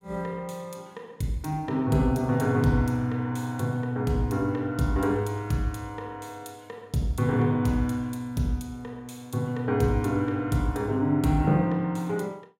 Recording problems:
none

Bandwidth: 16 kHz